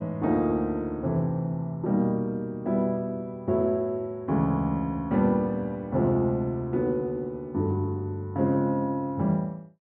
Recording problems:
none

